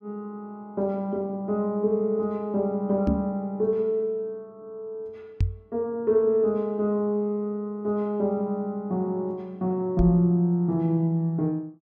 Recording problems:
microphone thump; at 3 s, at 5.5 s and at 10 s; peak +5 dB vs average level

